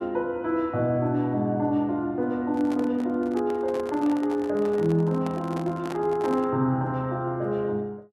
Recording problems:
microphone handling noise; from 2.5 to 6.5 s; peak -6 dB vs average level

